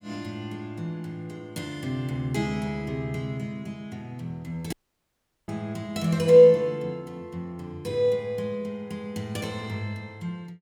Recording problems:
audio cutting out; at 4.5 s for 1 s

